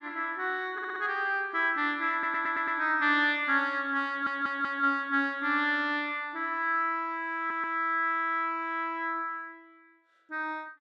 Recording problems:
audio stuttering; 4 times, first at 0.5 s

